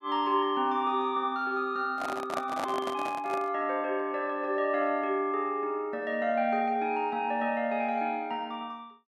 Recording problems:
handling noise; from 2 to 3.5 s; peak 0 dB vs average level

